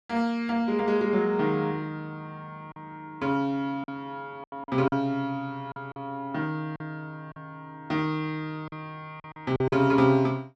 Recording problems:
lost packets; 6% of the sound replaced, filled with silence

